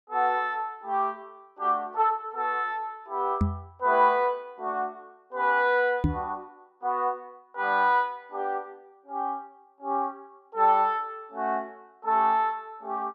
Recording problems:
microphone thump; at 3.5 s and at 6 s; peak +5 dB vs average level

